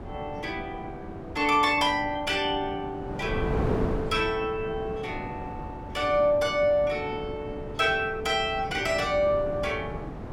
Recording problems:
wind noise; below 490 Hz, SNR 9 dB

